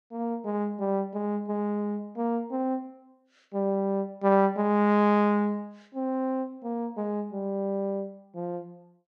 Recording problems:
none

